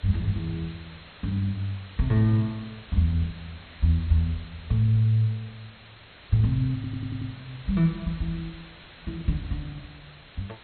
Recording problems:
lossy codec; MP2, log-spectral distance 13 dB, nothing above 3.9 kHz
background hiss; SNR 20 dB
stutter; at 7 s

